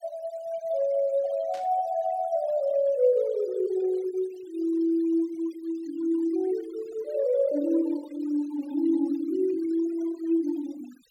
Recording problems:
noise reduction artefacts; signal-to-artefact ratio 23 dB
static burst; at 1.5 s; peak -16 dB vs average level

